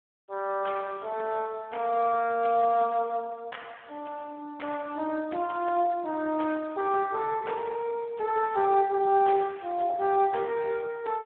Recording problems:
phone line; 260 Hz to 3.4 kHz, Speex

